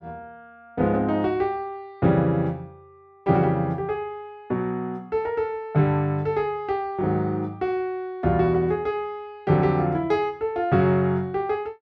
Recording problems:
none

